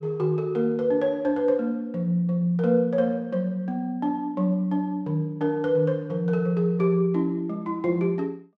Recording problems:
none

